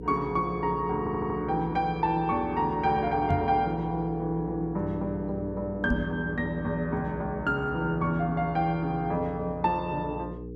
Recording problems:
hum; 60 Hz, harmonics up to 480 Hz, SNR 12 dB
audio stuttering; at 1 s
microphone bump; at 3.5 s and at 6 s; peak +4 dB vs average level

